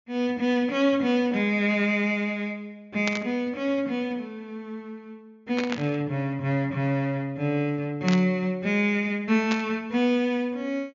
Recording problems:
treble missing; nothing above 7.3 kHz
static burst; 4 times, first at 3 s; peak -1 dB vs average level

